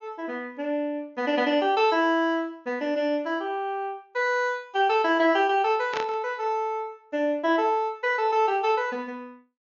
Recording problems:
treble missing; nothing above 7 kHz
burst of static; at 6 s; peak -2 dB vs average level

